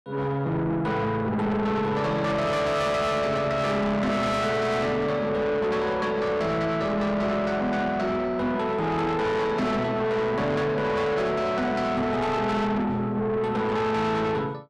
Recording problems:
distorted audio; soft clipping, signal-to-distortion ratio 7 dB

